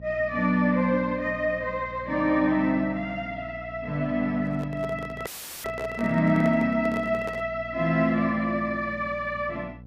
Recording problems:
hum; 60 Hz, harmonics up to 540 Hz, SNR 19 dB
handling noise; from 4.5 to 7.5 s; peak -6 dB vs average level
dropout; at 5.5 s; filled with static

